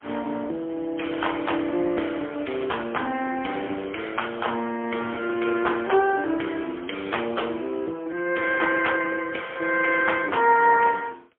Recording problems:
telephone audio; 240 Hz to 3.4 kHz, AMR-NB, then MP3

